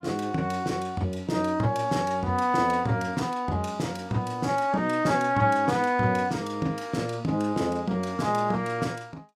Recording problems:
none

